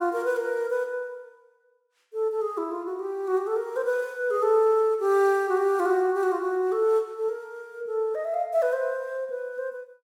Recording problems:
none

